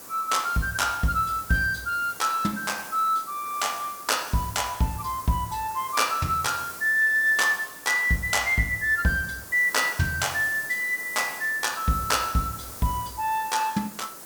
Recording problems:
background hiss; SNR 14 dB

